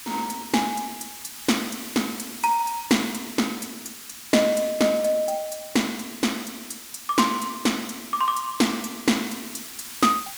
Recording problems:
hiss; SNR 13 dB

